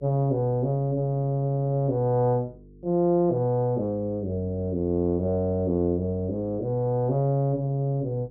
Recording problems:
hum; 50 Hz, harmonics up to 450 Hz, SNR 24 dB

